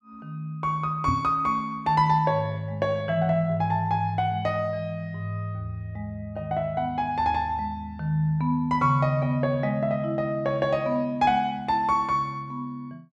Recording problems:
knock on the microphone; at 1 s; peak +2 dB vs average level

